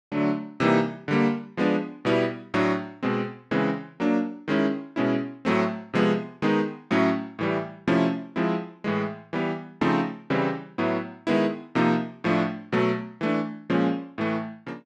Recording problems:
none

